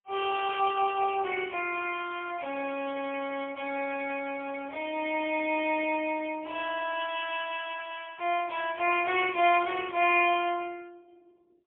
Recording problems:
telephone audio; 340 Hz to 3.4 kHz, AMR-NB, then MP3

